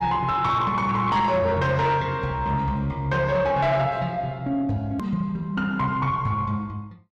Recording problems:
distorted audio; soft clipping, signal-to-distortion ratio 11 dB
click at an edit; at 5 s

